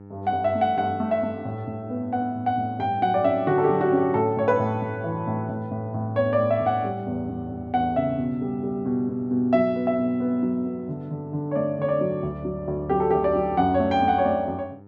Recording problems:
hum; 50 Hz, harmonics up to 1.3 kHz, SNR 22 dB

